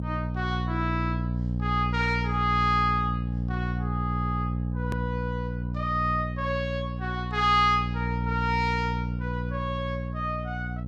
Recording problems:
hum; 60 Hz, harmonics up to 540 Hz, SNR 2 dB
click at an edit; at 5 s

